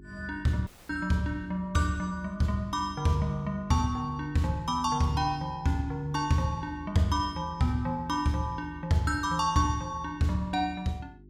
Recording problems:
hum; 50 Hz, harmonics up to 400 Hz, SNR 21 dB
dropout; at 0.5 s

